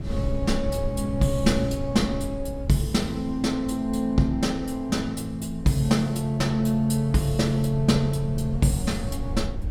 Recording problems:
wind on the microphone; below 100 Hz, SNR 10 dB

